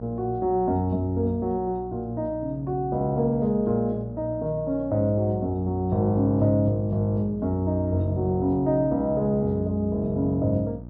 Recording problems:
low-pass filter; nothing above 5.5 kHz
electrical hum; 60 Hz, harmonics up to 660 Hz, SNR 15 dB

